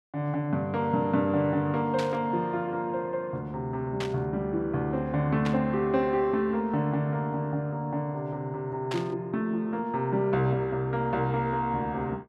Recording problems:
burst of static; 4 times, first at 2 s; peak -3 dB vs average level

